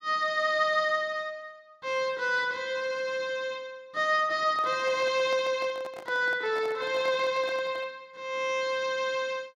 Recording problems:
microphone handling noise; from 4.5 to 8 s; peak -11 dB vs average level

